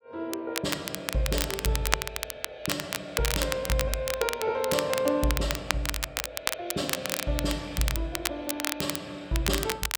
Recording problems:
crackle; vinyl, SNR 2 dB

